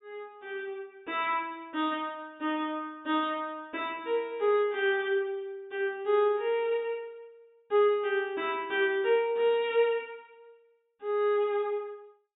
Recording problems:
treble cut off; nothing above 4 kHz

